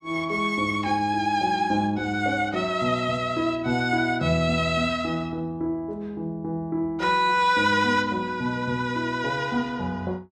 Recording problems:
none

